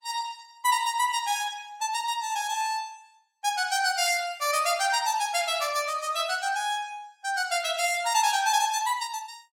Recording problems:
lossy compression; Opus, log-spectral distance 4 dB, nothing above 16.5 kHz

